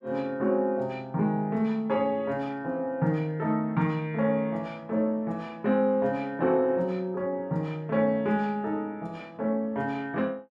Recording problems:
none

